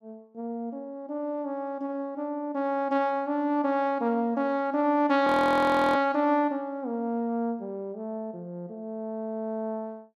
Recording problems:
audio freezing; at 5.5 s for 0.5 s

